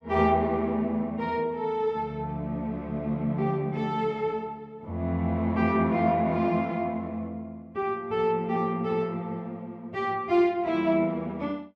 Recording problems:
none

